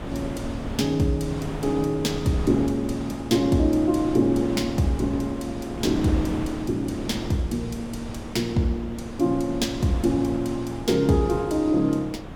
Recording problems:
wind noise; below 540 Hz, SNR 11 dB

